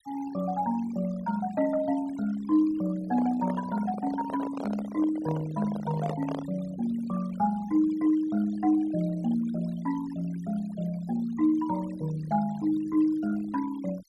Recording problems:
noise reduction artefacts; signal-to-artefact ratio 18 dB
microphone handling noise; from 3 to 6.5 s; peak -3 dB vs average level

